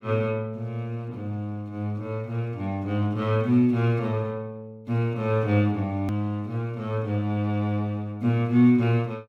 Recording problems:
click at an edit; at 6 s

